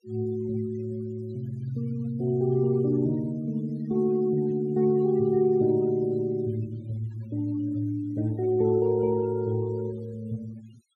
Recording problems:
noise reduction artefacts; signal-to-artefact ratio 27 dB

